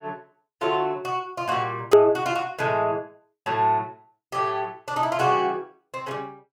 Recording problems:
hard cut with a click; at 2 s

